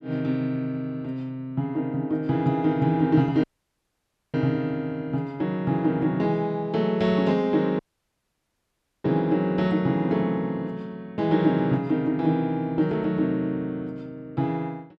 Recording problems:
audio cutting out; at 3.5 s for 1 s and at 8 s for 1 s

